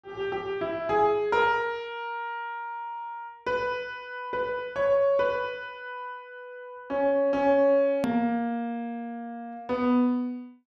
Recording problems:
edit click; at 8 s

